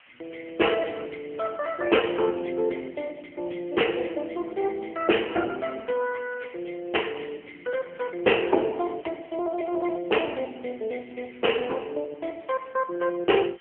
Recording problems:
telephone audio; 320 Hz to 3.2 kHz, AMR-NB
background hiss; SNR 28 dB

